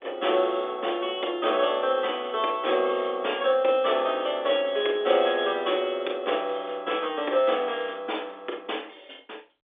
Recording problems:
phone line; 260 Hz to 3.6 kHz, G.711

